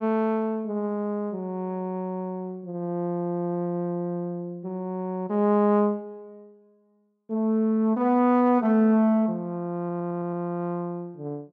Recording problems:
audio stuttering; at 10 s

